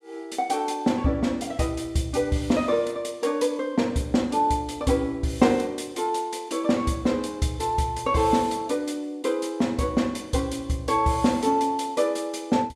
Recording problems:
none

